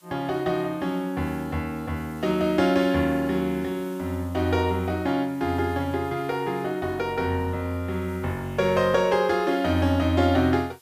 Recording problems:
hiss; slope +1 dB per octave, SNR 27 dB

